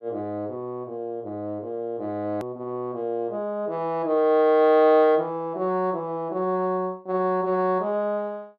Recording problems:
edit click; at 2.5 s

